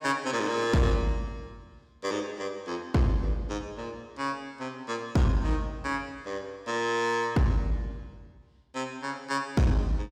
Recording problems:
distortion; hard clipping, uneven, signal-to-distortion ratio 11 dB

